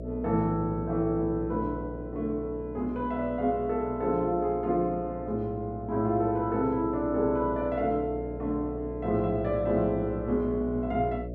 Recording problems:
hum; 60 Hz, harmonics up to 660 Hz, SNR 11 dB

